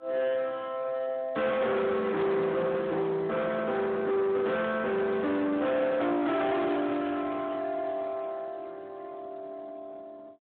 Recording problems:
phone line; 220 Hz to 3.9 kHz, Speex
distortion; soft clipping, signal-to-distortion ratio 8 dB

